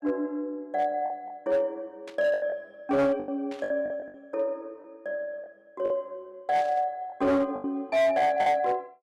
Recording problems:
distorted audio; hard clipping, signal-to-distortion ratio 12 dB
lost packets; 8% of the sound replaced, filled with the last packet
static burst; at 2 s, at 3.5 s and at 6.5 s; peak -13 dB vs average level

